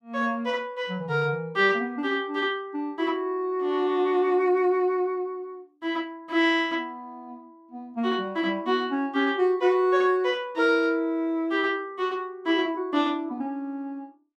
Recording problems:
none

